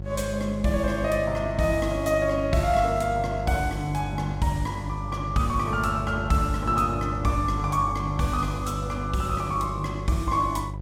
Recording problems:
electrical hum; 50 Hz, harmonics up to 700 Hz, SNR 7 dB

